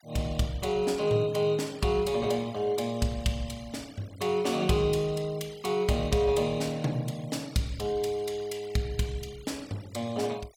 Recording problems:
denoising artefacts; signal-to-artefact ratio 22 dB

